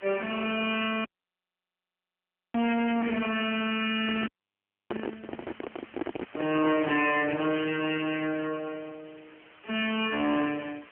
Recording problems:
phone line; 260 Hz to 3.3 kHz, AMR-NB
distortion; hard clipping, signal-to-distortion ratio 9 dB
background hiss; SNR 25 dB
audio cutting out; at 1 s for 1.5 s and at 4.5 s for 0.5 s
handling noise; from 4 to 7 s; peak -1 dB vs average level

